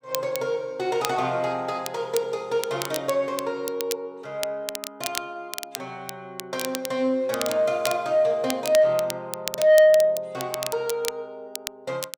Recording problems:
distorted audio; soft clipping, signal-to-distortion ratio 11 dB
crackle; vinyl, SNR 10 dB

